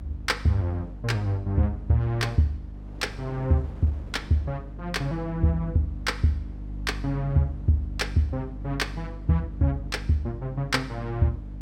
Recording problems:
hum; 50 Hz, harmonics up to 300 Hz, SNR 11 dB
wind on the microphone; below 510 Hz, SNR 23 dB

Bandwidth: 16 kHz